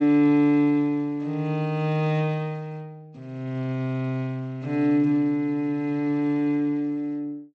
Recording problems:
low-pass filter; nothing above 7.8 kHz

